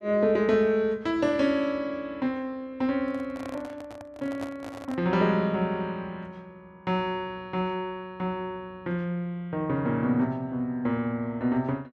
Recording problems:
microphone handling noise; from 3 to 5 s; peak -6 dB vs average level

